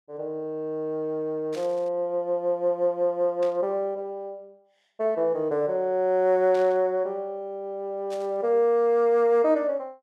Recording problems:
static burst; 4 times, first at 1.5 s; peak -14 dB vs average level

